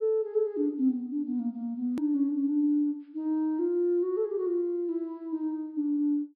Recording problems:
treble missing; nothing above 5.5 kHz
edit click; at 2 s

